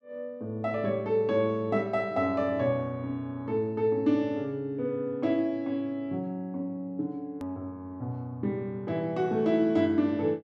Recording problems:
click at an edit; at 7.5 s

